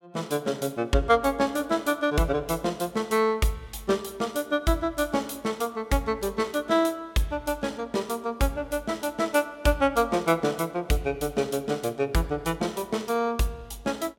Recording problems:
none

